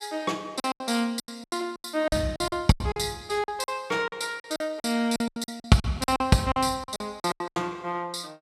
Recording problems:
packet loss; 18% of the sound replaced, filled with silence

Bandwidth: 14.5 kHz